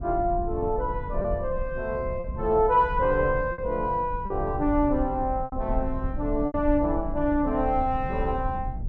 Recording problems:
rumble; below 78 Hz, SNR 9 dB
packet loss; 4% of the sound replaced, filled with repeated pitch periods

